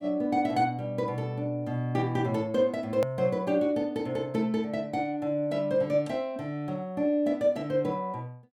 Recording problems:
edit click; at 3 s

